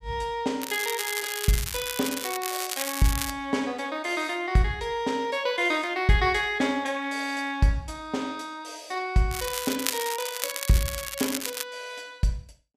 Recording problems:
crackling; from 0.5 to 3.5 s and from 9.5 to 12 s; loose cable, SNR 4 dB

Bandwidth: 14.5 kHz